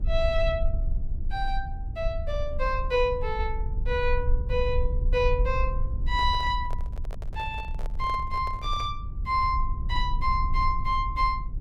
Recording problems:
rumble; below 62 Hz, SNR 3 dB
microphone handling noise; from 6 to 9 s; peak -11 dB vs average level

